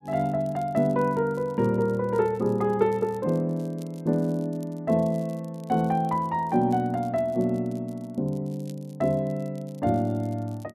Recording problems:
crackle; vinyl, SNR 30 dB

